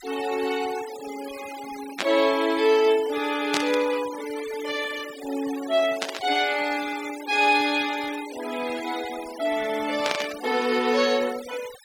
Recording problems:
denoising artefacts; signal-to-artefact ratio 14 dB
burst of static; 4 times, first at 2 s; peak +3 dB vs average level

